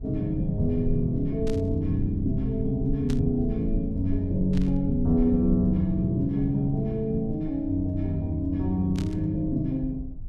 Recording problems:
low-frequency rumble; below 54 Hz, strongest tone 20 Hz, SNR 11 dB
static burst; 4 times, first at 1.5 s; peak -10 dB vs average level

